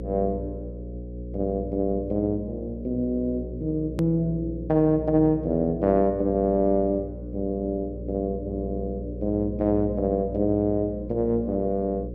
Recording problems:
electrical hum; 60 Hz, harmonics up to 540 Hz, SNR 10 dB
edit click; at 4 s

